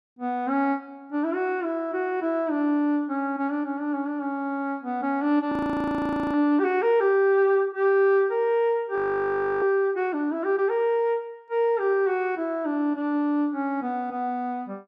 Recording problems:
audio freezing; at 5.5 s for 1 s and at 9 s for 0.5 s

